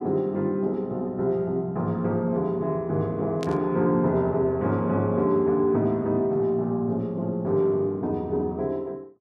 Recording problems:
burst of static; at 3.5 s; peak -9 dB vs average level

